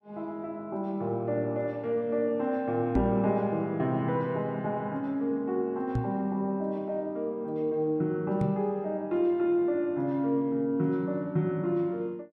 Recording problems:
knock on the microphone; at 3 s, at 6 s and at 8.5 s; peak +5 dB vs average level

